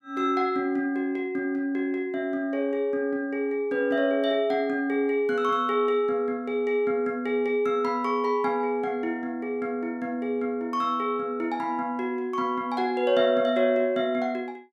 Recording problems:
none

